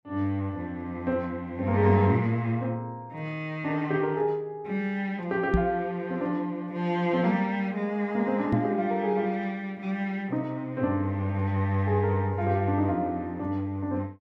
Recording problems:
microphone bump; at 5.5 s and at 8.5 s; peak +7 dB vs average level

